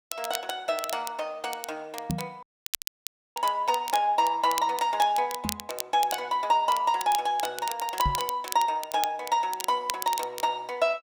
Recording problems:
crackling; vinyl, SNR 10 dB
microphone bump; at 2 s, at 5.5 s and at 8 s; peak +1 dB vs average level
audio cutting out; at 2.5 s for 1 s

